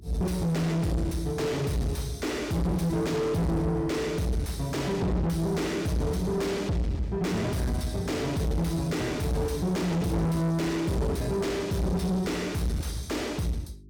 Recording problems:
distortion; soft clipping, signal-to-distortion ratio 6 dB
hum; 50 Hz, harmonics up to 400 Hz, SNR 22 dB

